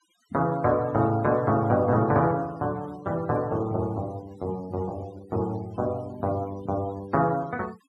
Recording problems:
noise reduction artefacts; signal-to-artefact ratio 25 dB

